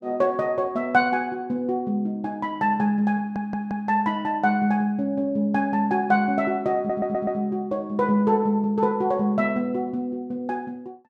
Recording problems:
stutter; at 3 s and at 7 s

